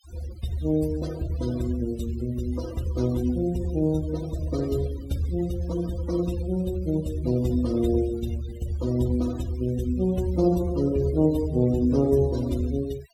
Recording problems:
denoising artefacts; signal-to-artefact ratio 19 dB

